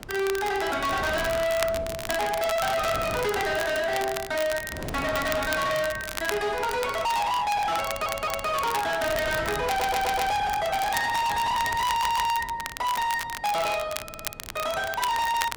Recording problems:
distortion; hard clipping, signal-to-distortion ratio 7 dB
wind noise; below 660 Hz, SNR 15 dB
crackling; vinyl, SNR 10 dB
audio stuttering; 4 times, first at 8 s

